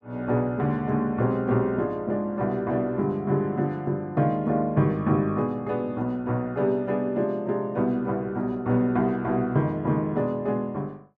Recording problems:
none

